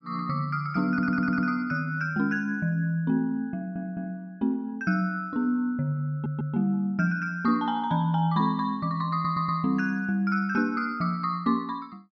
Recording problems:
audio stuttering; 4 times, first at 1 s

